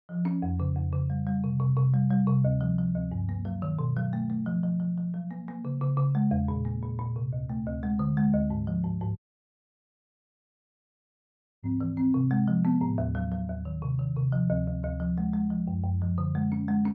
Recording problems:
audio cutting out; at 9 s for 2.5 s

